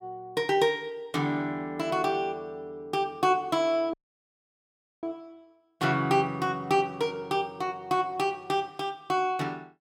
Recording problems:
dropout; at 4 s for 1 s

